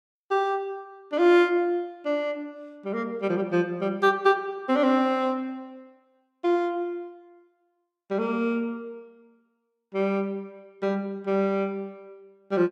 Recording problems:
none

